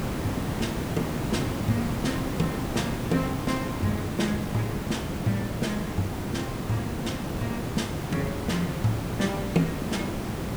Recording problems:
hiss; slope -6 dB per octave, SNR 0 dB

